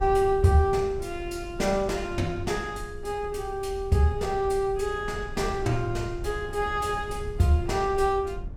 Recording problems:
rumble; below 86 Hz, SNR 13 dB

